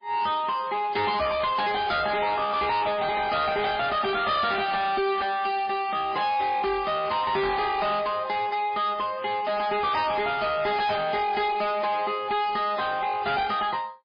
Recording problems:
codec artefacts; MP3, log-spectral distance 4 dB, nothing above 4.1 kHz
distortion; soft clipping, signal-to-distortion ratio 7 dB

